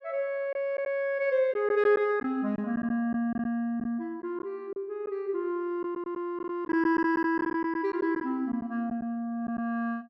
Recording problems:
lost packets; 6% of the sound replaced, filled with silence

